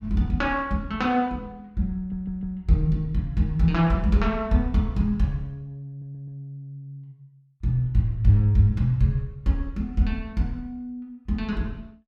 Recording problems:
audio stuttering; at 2 s and at 6 s

